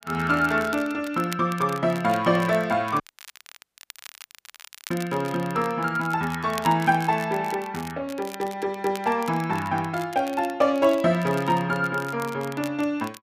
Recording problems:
crackling; vinyl, SNR 18 dB
audio cutting out; at 3 s for 2 s

